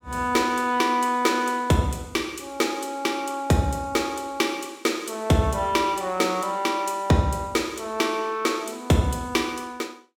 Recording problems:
none

